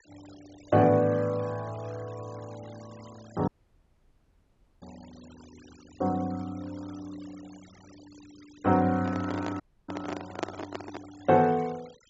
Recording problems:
low-pass filter; nothing above 8 kHz
denoising artefacts; signal-to-artefact ratio 23 dB
audio cutting out; at 3.5 s for 1.5 s and at 9.5 s
microphone handling noise; from 9 to 11 s; peak +1 dB vs average level

